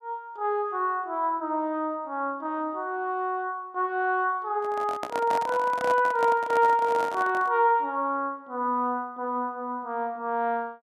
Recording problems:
microphone handling noise; from 4.5 to 7.5 s; peak -2 dB vs average level

